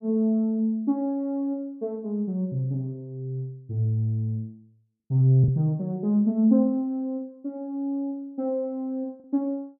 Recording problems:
packet loss; 0.5% of the sound replaced, filled with the last packet

